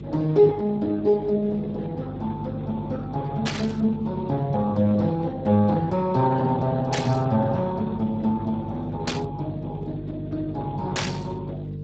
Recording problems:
codec artefacts; Speex, log-spectral distance 3 dB
electrical hum; 50 Hz, harmonics up to 450 Hz, SNR 9 dB
static burst; 4 times, first at 3.5 s; peak +2 dB vs average level

